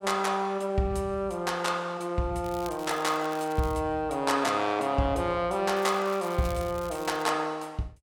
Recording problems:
crackle; from 2.5 to 4 s and from 5.5 to 7.5 s; loose cable, SNR 19 dB

